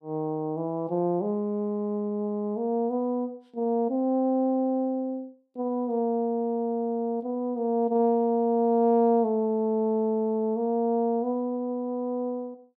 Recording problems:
none

